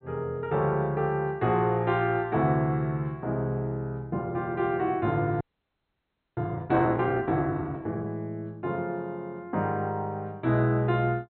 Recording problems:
treble missing; nothing above 4.1 kHz
audio freezing; at 5.5 s for 1 s

